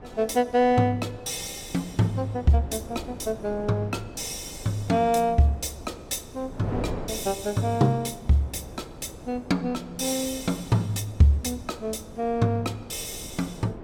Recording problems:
wind on the microphone; below 520 Hz, SNR 15 dB

